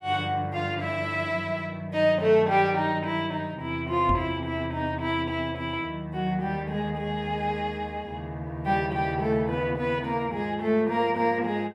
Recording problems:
microphone thump; at 4 s; peak +1 dB vs average level

